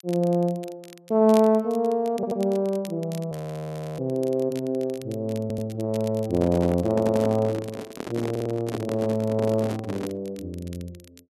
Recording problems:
crackling; vinyl, SNR 23 dB
audio stuttering; 4 times, first at 2 s
frozen audio; at 3.5 s for 0.5 s
handling noise; from 6.5 to 10 s; peak -2 dB vs average level

